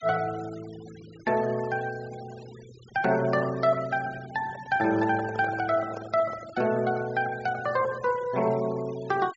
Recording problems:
low-pass filter; nothing above 8 kHz
denoising artefacts; signal-to-artefact ratio 19 dB
handling noise; from 4.5 to 6.5 s; peak -7 dB vs average level

